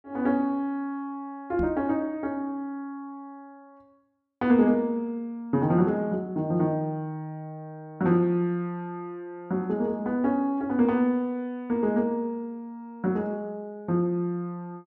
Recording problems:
microphone bump; at 1.5 s; peak -2 dB vs average level

